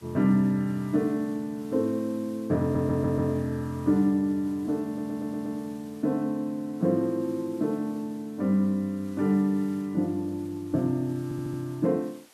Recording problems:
hiss; slope -1 dB per octave, SNR 27 dB
audio stuttering; at 2.5 s, at 5 s and at 11 s

